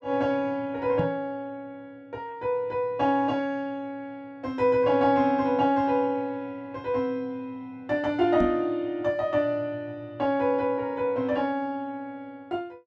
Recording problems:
knock on the microphone; at 1 s and at 8.5 s; peak +2 dB vs average level

